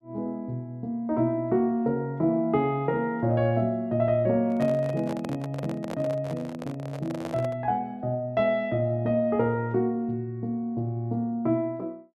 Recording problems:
microphone handling noise; from 4.5 to 7.5 s; peak -5 dB vs average level

